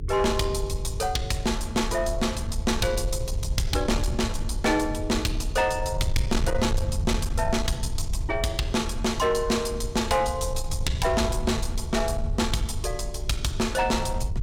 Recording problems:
distortion; soft clipping, signal-to-distortion ratio 11 dB
electrical hum; 50 Hz, harmonics up to 450 Hz, SNR 19 dB
low-frequency rumble; below 84 Hz, SNR 5 dB

